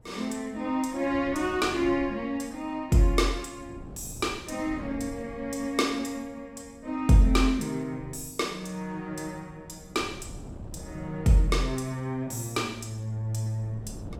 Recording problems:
wind noise; below 240 Hz, SNR 19 dB

